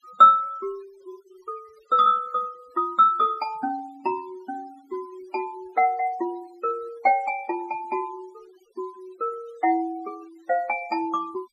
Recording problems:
noise reduction artefacts; signal-to-artefact ratio 25 dB

